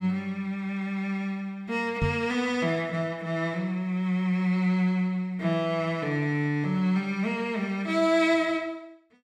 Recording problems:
microphone bump; at 2 s; peak +3 dB vs average level

